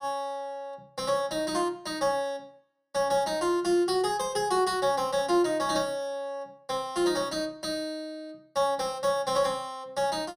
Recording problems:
none

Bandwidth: 15 kHz